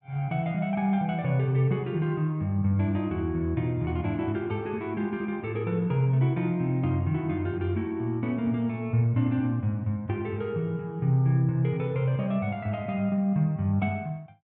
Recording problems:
none

